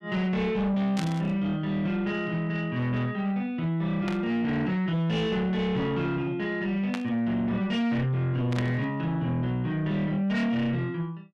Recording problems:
distorted audio; soft clipping, signal-to-distortion ratio 11 dB
static burst; 4 times, first at 1 s; peak -3 dB vs average level

